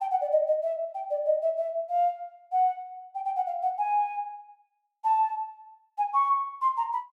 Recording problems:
none

